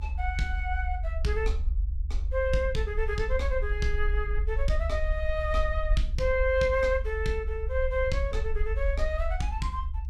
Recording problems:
low-frequency rumble; below 68 Hz, SNR 2 dB

